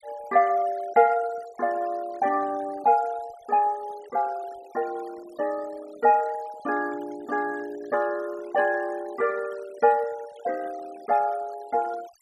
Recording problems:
noise reduction artefacts; signal-to-artefact ratio 21 dB

